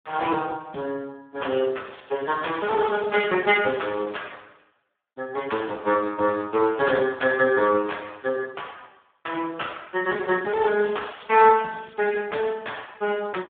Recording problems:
telephone audio; 220 Hz to 3.5 kHz, Speex
crackle; from 2 to 4 s and from 11 to 12 s; loose cable, SNR 27 dB

